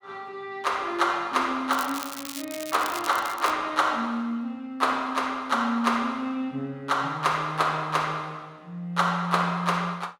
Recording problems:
crackle; from 1.5 to 3.5 s; loose cable, SNR 11 dB

